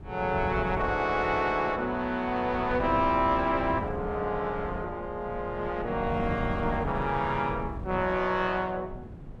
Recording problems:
wind noise; below 210 Hz, SNR 11 dB

